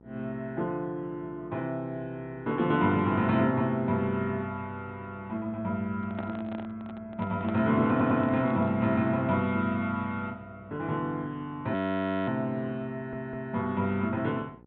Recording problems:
low-pass filter; nothing above 4 kHz
hum; 60 Hz, harmonics up to 1.3 kHz, SNR 25 dB
handling noise; from 6 to 9 s; peak -4 dB vs average level
stutter; at 8 s and at 13 s
audio freezing; at 12 s for 0.5 s

